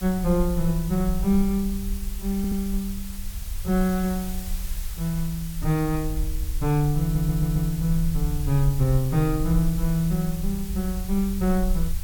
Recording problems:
hiss; slope +1 dB per octave, SNR 14 dB
low-frequency rumble; below 54 Hz, SNR 7 dB
audio stuttering; at 2.5 s and at 7 s

